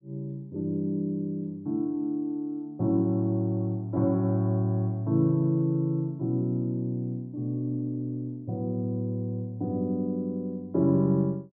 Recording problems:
low-pass filter; nothing above 5.9 kHz

